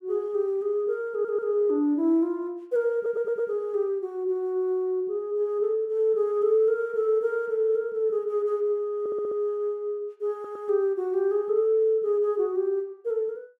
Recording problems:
stutter; 4 times, first at 1 s

